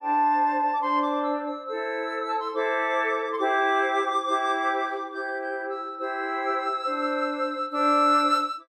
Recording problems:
none

